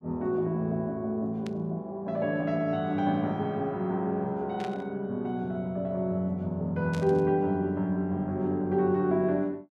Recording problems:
burst of static; at 1.5 s, at 4.5 s and at 7 s; peak -10 dB vs average level

